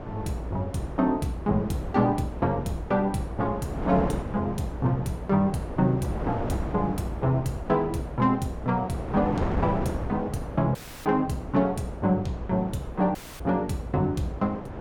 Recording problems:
wind noise; below 600 Hz, SNR 8 dB
dropout; at 11 s and at 13 s

